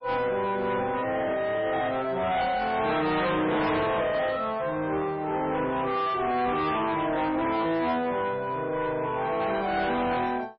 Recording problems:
lossy compression; MP3, log-spectral distance 3 dB, nothing above 4.5 kHz
distorted audio; soft clipping, signal-to-distortion ratio 6 dB

